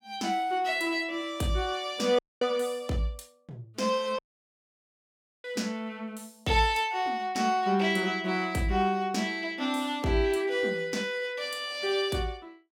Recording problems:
dropout; at 2 s and at 4 s for 1.5 s

